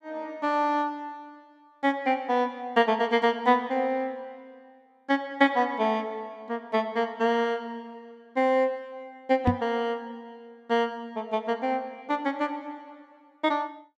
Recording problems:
microphone thump; at 9.5 s; peak +7 dB vs average level

